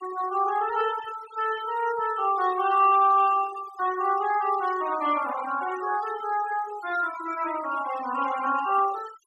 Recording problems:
noise reduction artefacts; signal-to-artefact ratio 15 dB

